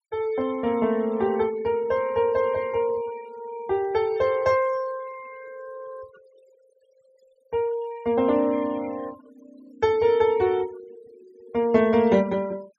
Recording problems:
denoising artefacts; signal-to-artefact ratio 26 dB

